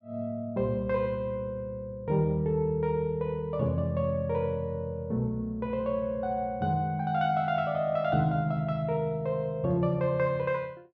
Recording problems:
none

